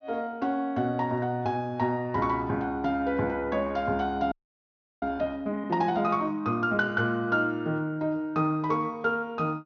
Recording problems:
low-pass filter; nothing above 6.4 kHz
frozen audio; at 4.5 s for 0.5 s

